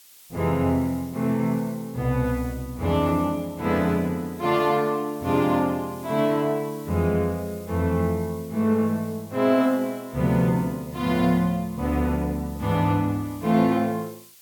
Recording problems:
hiss; slope +2 dB per octave, SNR 23 dB

